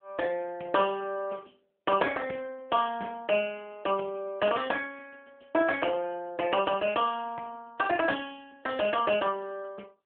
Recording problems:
phone line; 220 Hz to 3.3 kHz, AMR-NB

